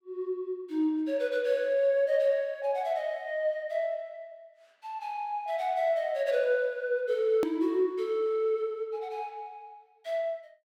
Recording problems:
click at an edit; at 7.5 s

